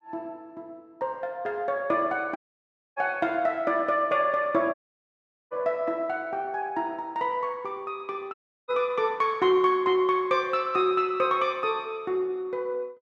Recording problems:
dropout; at 2.5 s for 0.5 s, at 4.5 s for 1 s and at 8.5 s

